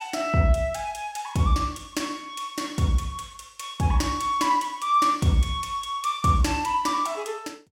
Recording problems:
none

